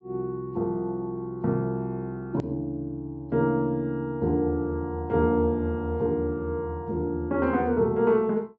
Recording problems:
treble missing; nothing above 7.5 kHz
edit click; at 2.5 s

